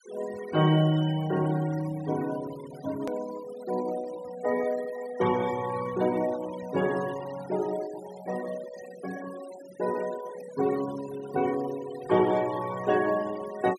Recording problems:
noise reduction artefacts; signal-to-artefact ratio 15 dB
hard cut with a click; at 3 s

